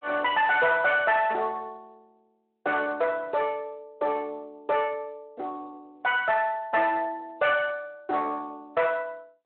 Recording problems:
telephone audio; 340 Hz to 3.3 kHz, Speex
distorted audio; soft clipping, signal-to-distortion ratio 11 dB

